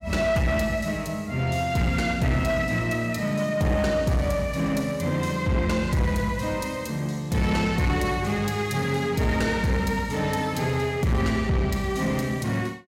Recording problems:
distorted audio; soft clipping, signal-to-distortion ratio 11 dB

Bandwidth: 16 kHz